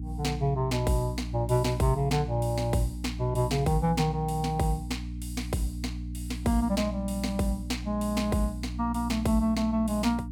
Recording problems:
hum; 60 Hz, harmonics up to 300 Hz, SNR 8 dB

